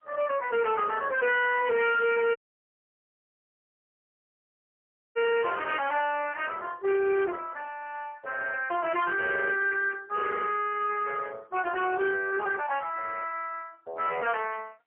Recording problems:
telephone audio; 340 Hz to 3.2 kHz, AMR-NB, then MP3
distortion; hard clipping, signal-to-distortion ratio 6 dB
dropout; at 2.5 s for 3 s

